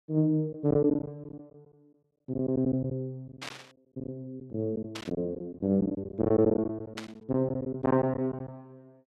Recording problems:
packet loss; 11% of the sound replaced, filled with silence
burst of static; at 3.5 s, at 5 s and at 7 s; peak -4 dB vs average level

